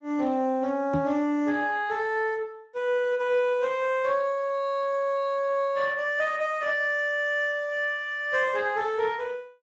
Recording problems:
lossy compression; Speex, log-spectral distance 2 dB
microphone bump; at 1 s; peak +2 dB vs average level

